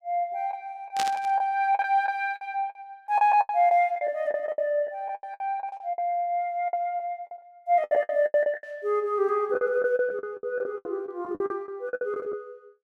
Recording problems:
lost packets; 16% of the sound replaced, filled with the last packet
static burst; at 1 s; peak +1 dB vs average level

